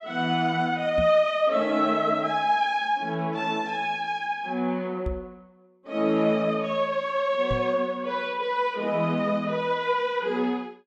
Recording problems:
microphone bump; at 1 s, at 5 s and at 7.5 s; peak -2 dB vs average level

